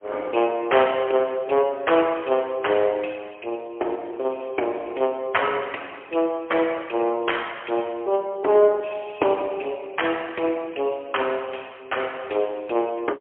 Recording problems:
telephone audio; 300 Hz to 3.2 kHz, AMR-NB, then MP3

